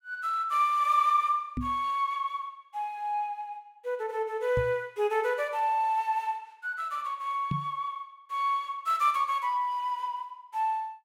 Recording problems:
microphone bump; at 1.5 s, at 4.5 s and at 7.5 s; peak +1 dB vs average level

